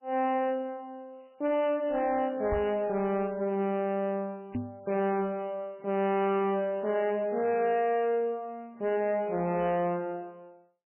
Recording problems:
lossy codec; MP3, log-spectral distance 2 dB, nothing above 2.9 kHz
distorted audio; soft clipping, signal-to-distortion ratio 11 dB
knock on the microphone; at 2.5 s and at 4.5 s; peak 0 dB vs average level

